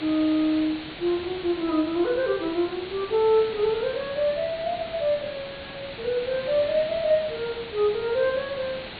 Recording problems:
treble missing; nothing above 4.4 kHz
hiss; SNR 12 dB

